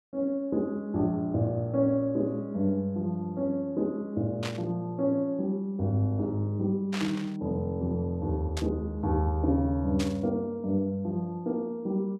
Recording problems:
burst of static; 4 times, first at 4.5 s; peak -2 dB vs average level

